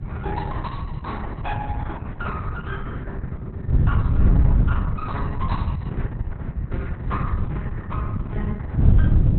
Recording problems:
lossy codec; Opus, log-spectral distance 3 dB, nothing above 4.1 kHz
wind on the microphone; below 120 Hz, SNR -10 dB

